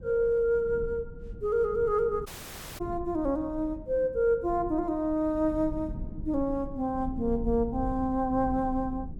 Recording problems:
rumble; below 130 Hz, SNR 13 dB
dropout; at 2.5 s for 0.5 s

